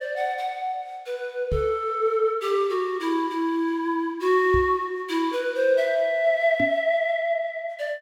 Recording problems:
knock on the microphone; at 1.5 s, at 4.5 s and at 6.5 s; peak -1 dB vs average level

